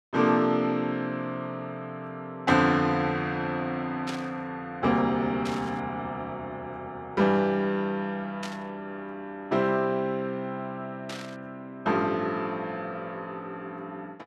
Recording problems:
burst of static; 5 times, first at 2.5 s; peak -4 dB vs average level

